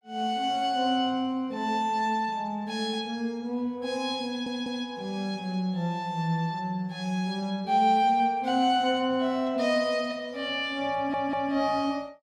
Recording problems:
stutter; at 4.5 s and at 11 s

